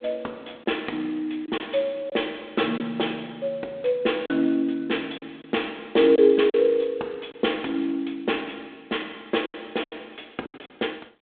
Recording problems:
phone line; 240 Hz to 3.6 kHz, G.726
lost packets; 5% of the sound replaced, filled with silence

